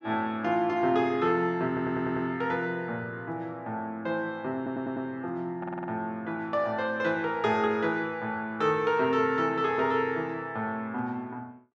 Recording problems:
stutter; at 1.5 s, at 4.5 s and at 5.5 s

